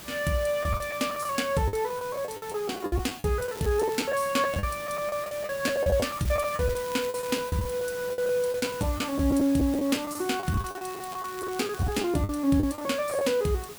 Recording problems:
hiss; slope -2 dB per octave, SNR 14 dB
packet loss; 14% of the sound replaced, filled with the last packet
crackling; at 3.5 s, from 6 to 7.5 s and from 10 to 12 s; loose cable, SNR 19 dB

